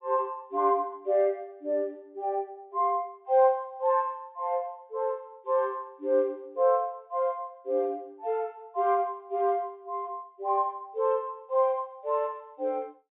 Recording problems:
treble cut off; nothing above 4 kHz

